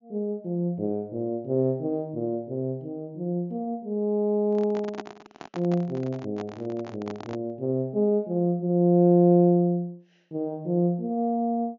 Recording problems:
treble missing; nothing above 7 kHz
microphone handling noise; from 4.5 to 7.5 s; peak -6 dB vs average level

